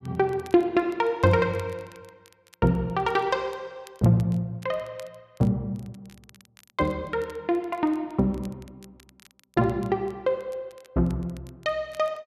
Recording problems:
crackling; vinyl, SNR 28 dB

